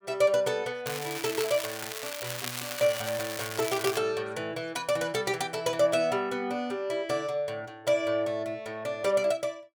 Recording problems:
crackle; from 1 to 4 s; loose cable, SNR 6 dB

